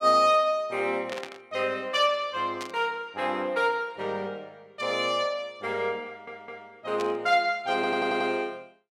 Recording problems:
burst of static; at 1 s, at 2.5 s and at 7 s; peak -6 dB vs average level
stutter; at 6 s and at 7.5 s

